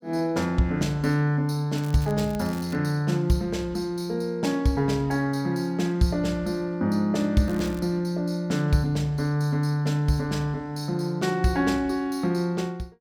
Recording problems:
crackling; at 2 s and at 7.5 s; loose cable, SNR 22 dB

